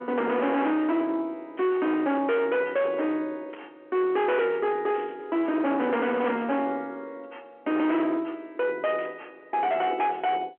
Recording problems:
phone line; 260 Hz to 3.3 kHz, G.711
distortion; hard clipping, uneven, signal-to-distortion ratio 7 dB
static burst; 4 times, first at 1.5 s; peak -15 dB vs average level

